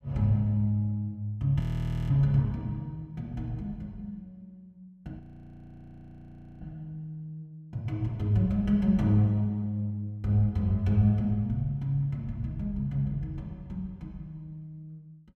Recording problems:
frozen audio; at 1.5 s for 0.5 s and at 5 s for 1.5 s

